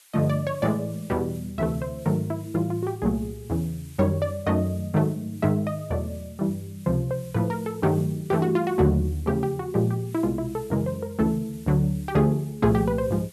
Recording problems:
hiss; slope +3 dB per octave, SNR 24 dB

